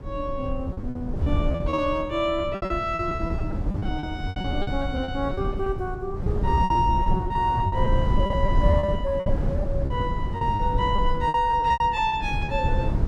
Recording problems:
rumble; below 130 Hz, SNR 2 dB
packet loss; 16% of the sound replaced, filled with repeated pitch periods

